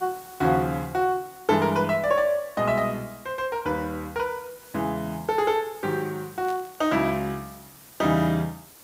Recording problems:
background hiss; slope -2 dB per octave, SNR 21 dB
static burst; at 6.5 s; peak -15 dB vs average level

